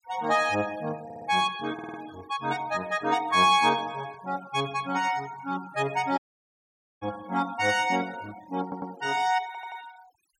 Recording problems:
denoising artefacts; signal-to-artefact ratio 21 dB
stutter; 4 times, first at 1 s
dropout; at 6 s for 1 s

